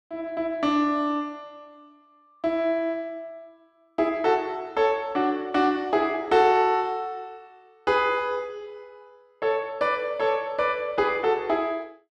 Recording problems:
none

